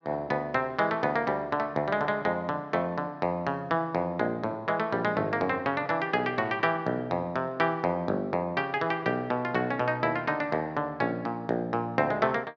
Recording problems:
none

